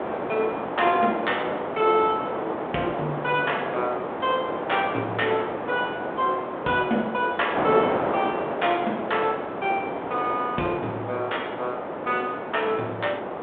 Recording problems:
telephone audio; 220 Hz to 3.6 kHz, G.726
wind noise; below 1 kHz, SNR 4 dB

